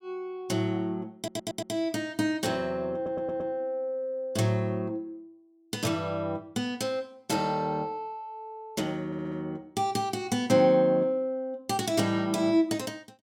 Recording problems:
audio stuttering; at 1 s, at 3 s and at 9 s

